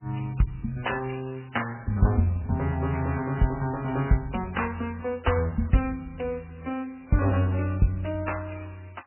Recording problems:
lossy codec; MP3, then MP3, log-spectral distance 4 dB, nothing above 3 kHz

